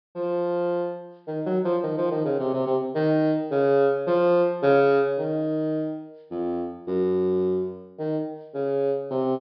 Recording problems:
low-pass filter; nothing above 5.5 kHz

